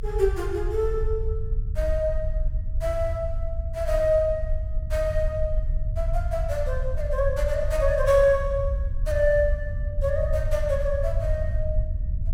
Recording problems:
rumble; below 70 Hz, SNR 3 dB

